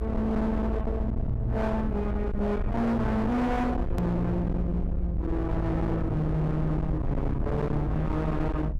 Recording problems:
distortion; hard clipping, uneven, signal-to-distortion ratio 7 dB
rumble; below 150 Hz, SNR 4 dB
click at an edit; at 4 s

